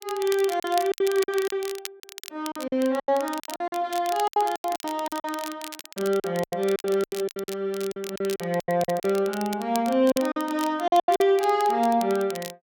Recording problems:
crackling; vinyl, SNR 14 dB
lost packets; 15% of the sound replaced, filled with silence

